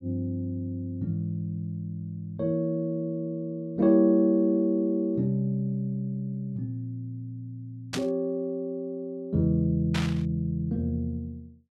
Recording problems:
burst of static; at 8 s and at 10 s; peak 0 dB vs average level

